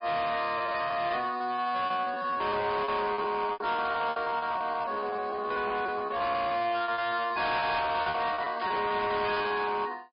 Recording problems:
treble cut off; nothing above 5 kHz
codec artefacts; MP3, log-spectral distance 3 dB
distorted audio; hard clipping, signal-to-distortion ratio 10 dB
lost packets; 18% of the sound replaced, filled with repeated pitch periods
static burst; at 8.5 s; peak -10 dB vs average level

